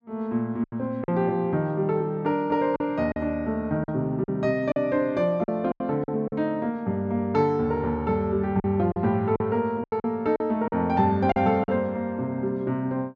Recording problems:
lost packets; 7% of the sound replaced, filled with silence

